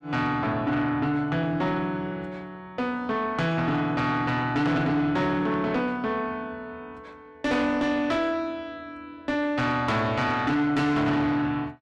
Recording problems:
distortion; soft clipping, signal-to-distortion ratio 11 dB

